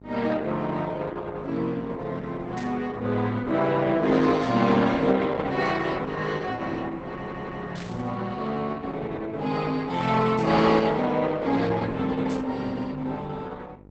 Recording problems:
codec artefacts; Opus, log-spectral distance 4 dB, nothing above 8 kHz
hum; 50 Hz, harmonics up to 1 kHz, SNR 23 dB
static burst; 5 times, first at 2.5 s; peak -13 dB vs average level
audio stuttering; at 7 s

